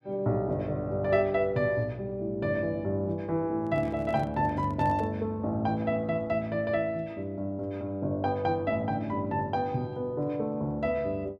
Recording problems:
microphone handling noise; from 3.5 to 5 s; peak -7 dB vs average level

